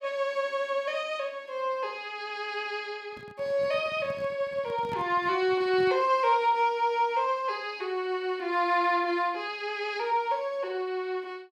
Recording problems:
handling noise; from 3 to 6 s; peak -8 dB vs average level

